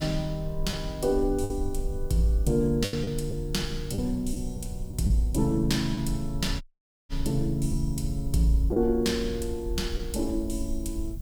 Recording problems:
hiss; slope +5 dB per octave, SNR 29 dB
low-frequency rumble; below 62 Hz, SNR 8 dB
packet loss; 4% of the sound replaced, filled with the last packet
audio cutting out; at 6.5 s

